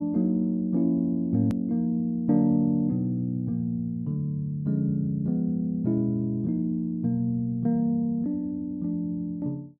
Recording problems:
hard cut with a click; at 1.5 s

